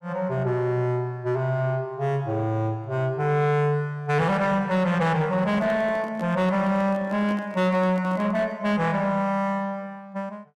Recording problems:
distortion; soft clipping, signal-to-distortion ratio 10 dB
handling noise; from 5.5 to 8.5 s; peak -9 dB vs average level

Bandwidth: 14.5 kHz